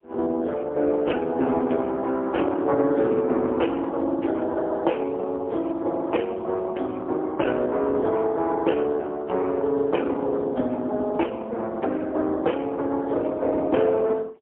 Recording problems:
phone line; 220 Hz to 3.2 kHz, AMR-NB, then MP3

